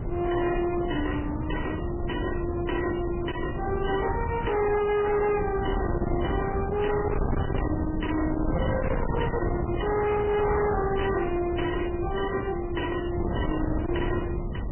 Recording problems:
lossy compression; MP3, log-spectral distance 5 dB, nothing above 3 kHz
distorted audio; hard clipping, uneven, signal-to-distortion ratio 8 dB
wind noise; below 350 Hz, SNR 4 dB

